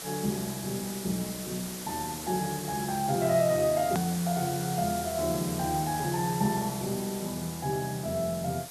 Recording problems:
hiss; slope -1 dB per octave, SNR 8 dB
click at an edit; at 4 s

